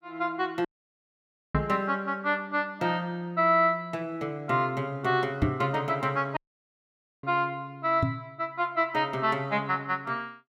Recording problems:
dropout; at 0.5 s for 1 s and at 6.5 s for 1 s
microphone thump; at 1.5 s, at 5.5 s and at 8 s; peak +6 dB vs average level

